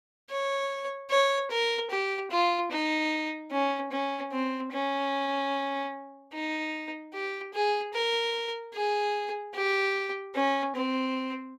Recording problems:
none

